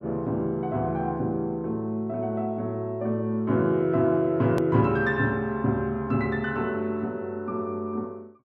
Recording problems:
hard cut with a click; at 4.5 s

